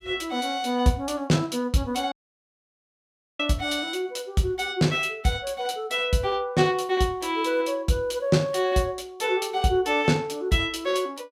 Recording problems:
dropout; at 2 s for 1.5 s

